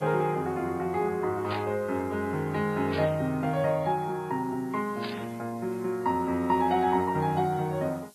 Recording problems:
lossy codec; MP3, log-spectral distance 2 dB
hiss; SNR 28 dB
burst of static; at 1.5 s, at 3 s and at 5 s; peak -5 dB vs average level

